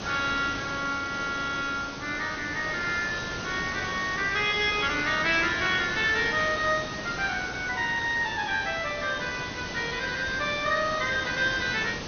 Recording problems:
lossy compression; MP2, log-spectral distance 11 dB, nothing above 5.7 kHz
background hiss; slope -3 dB per octave, SNR 9 dB

